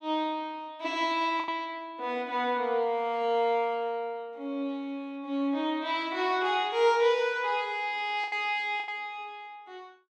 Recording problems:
lost packets; 2% of the sound replaced, filled with the last packet

